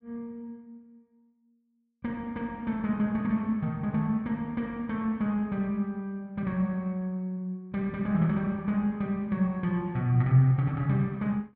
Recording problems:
none

